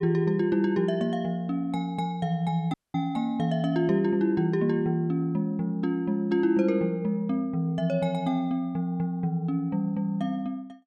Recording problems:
dropout; at 2.5 s

